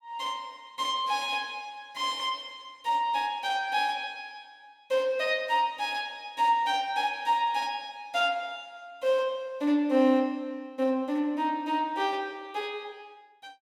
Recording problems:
none

